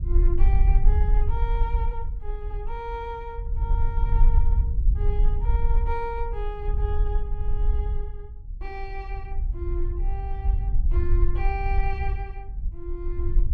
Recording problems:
rumble; below 52 Hz, SNR -10 dB

